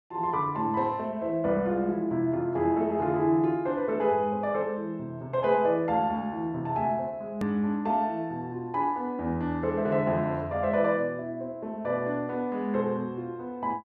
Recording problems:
click at an edit; at 7.5 s

